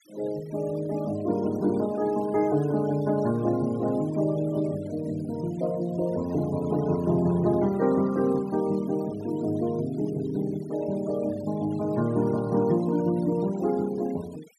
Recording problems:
denoising artefacts; signal-to-artefact ratio 21 dB

